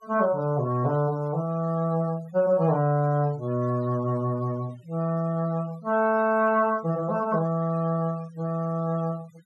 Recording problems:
noise reduction artefacts; signal-to-artefact ratio 25 dB

